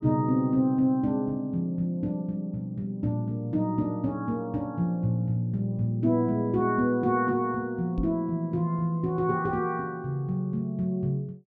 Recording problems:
knock on the microphone; at 8 s; peak -1 dB vs average level

